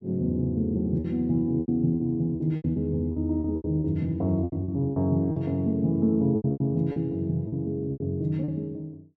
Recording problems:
packet loss; 12% of the sound replaced, filled with repeated pitch periods

